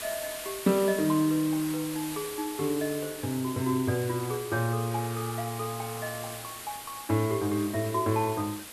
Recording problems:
background hiss; slope -1 dB per octave, SNR 10 dB

